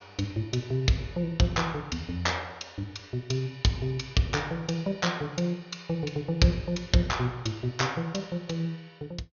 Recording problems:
low-pass filter; nothing above 6.6 kHz

